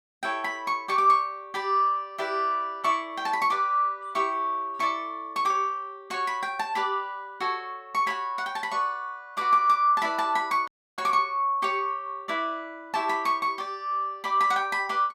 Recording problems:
dropout; at 11 s

